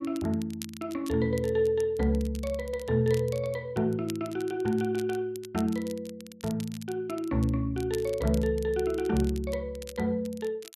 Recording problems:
crackle; vinyl, SNR 19 dB

